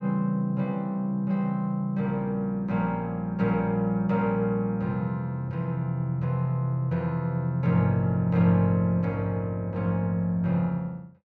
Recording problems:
none

